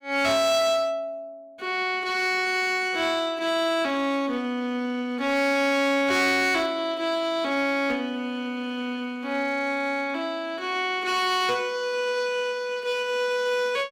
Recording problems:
distortion; hard clipping, uneven, signal-to-distortion ratio 11 dB

